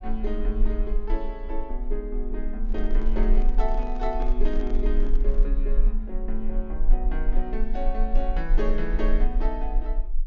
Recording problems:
treble missing; nothing above 6.9 kHz
low-frequency rumble; below 34 Hz, strongest tone 22 Hz, SNR -4 dB
microphone handling noise; from 2.5 to 5.5 s; peak -4 dB vs average level

